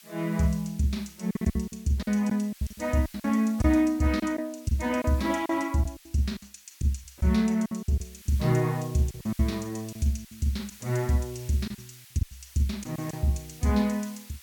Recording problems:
hiss; SNR 21 dB
lost packets; 10% of the sound replaced, filled with silence

